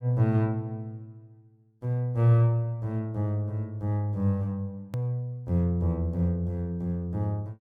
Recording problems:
hard cut with a click; at 5 s

